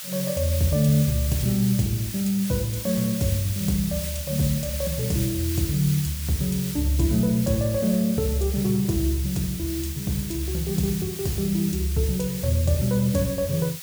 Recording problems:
background hiss; slope +3 dB per octave, SNR 8 dB

